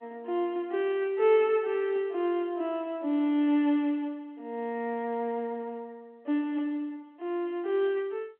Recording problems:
telephone audio; 240 Hz to 3.5 kHz, G.711

